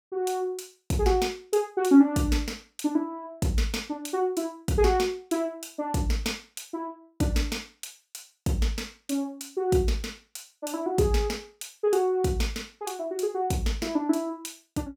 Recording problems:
none

